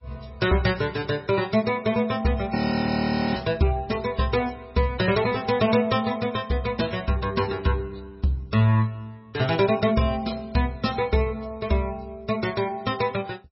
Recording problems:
codec artefacts; MP3, log-spectral distance 4 dB, nothing above 5.5 kHz
audio freezing; at 2.5 s for 1 s

